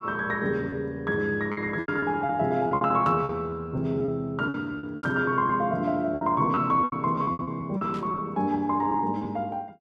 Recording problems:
lost packets; 12% of the sound replaced, filled with repeated pitch periods
static burst; at 3 s, at 5 s and at 8 s; peak -16 dB vs average level

